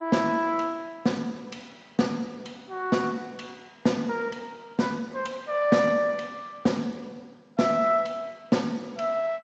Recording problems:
codec artefacts; Speex, then MP2, log-spectral distance 3 dB, nothing above 7.3 kHz

